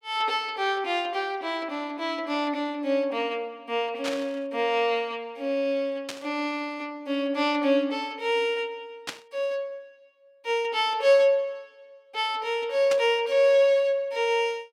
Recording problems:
burst of static; 4 times, first at 4 s; peak -2 dB vs average level

